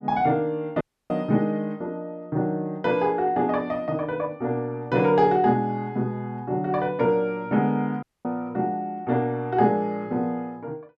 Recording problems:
dropout; at 1 s and at 8 s

